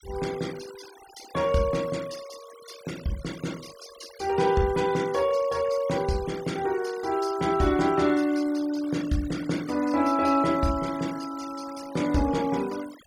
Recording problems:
noise reduction artefacts; signal-to-artefact ratio 18 dB

